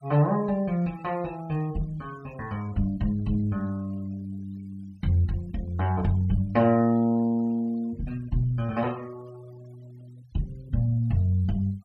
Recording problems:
noise reduction artefacts; signal-to-artefact ratio 27 dB

